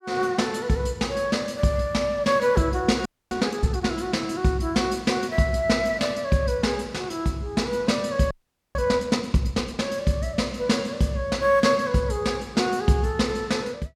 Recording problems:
audio freezing; at 3 s and at 8.5 s

